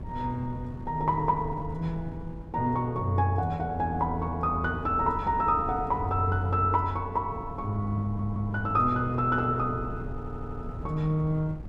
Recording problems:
wind noise; below 160 Hz, SNR 13 dB
audio stuttering; at 8 s and at 10 s

